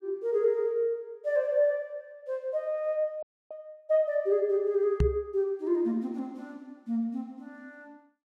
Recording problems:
frozen audio; at 3 s
knock on the microphone; at 5 s; peak +6 dB vs average level

